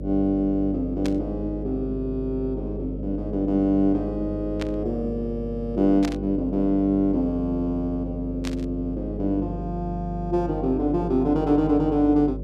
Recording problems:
mains hum; 50 Hz, harmonics up to 600 Hz, SNR 9 dB
burst of static; 4 times, first at 1 s; peak -5 dB vs average level

